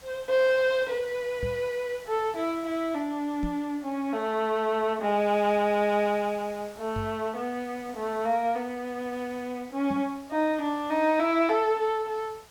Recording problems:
background hiss; SNR 23 dB
knock on the microphone; 4 times, first at 1.5 s; peak -3 dB vs average level

